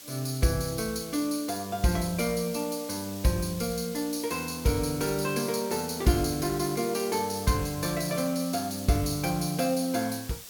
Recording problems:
hiss; slope +1 dB per octave, SNR 13 dB

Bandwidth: 17.5 kHz